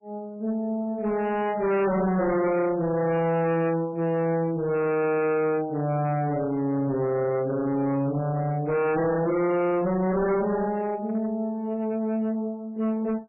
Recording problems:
lossy codec; MP3, log-spectral distance 2 dB, nothing above 2.5 kHz
distorted audio; hard clipping, signal-to-distortion ratio 8 dB

